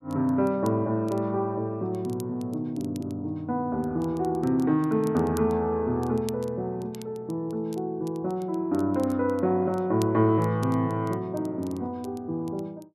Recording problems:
crackle; vinyl, SNR 24 dB

